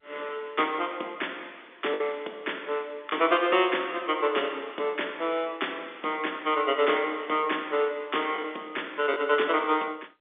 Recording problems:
phone line; 260 Hz to 3.6 kHz, G.711
lost packets; 1.4% of the sound replaced, filled with the last packet

